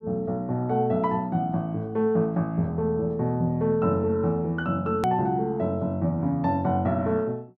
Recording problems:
edit click; at 5 s

